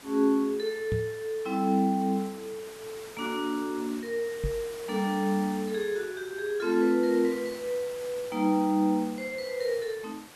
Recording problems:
hiss; slope -3 dB per octave, SNR 17 dB
microphone bump; at 1 s and at 4.5 s; peak 0 dB vs average level

